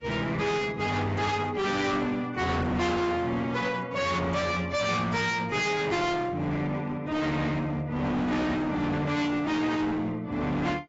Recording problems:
lossy codec; AAC, log-spectral distance 3 dB, nothing above 7.6 kHz
distorted audio; hard clipping, signal-to-distortion ratio 6 dB

